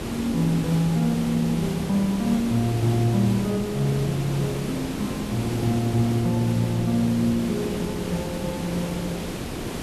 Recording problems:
hiss; SNR 7 dB

